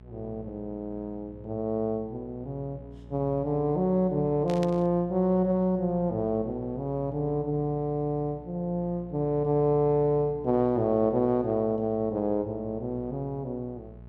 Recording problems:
hum; 60 Hz, harmonics up to 840 Hz, SNR 20 dB
static burst; at 4.5 s; peak -9 dB vs average level

